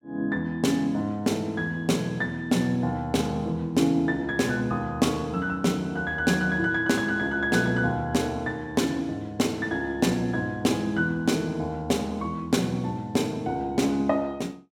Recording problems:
none

